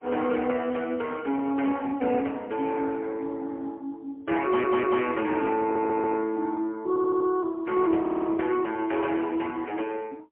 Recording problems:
telephone audio; 190 Hz to 3.2 kHz, AMR-NB, then MP3
audio stuttering; 4 times, first at 4.5 s

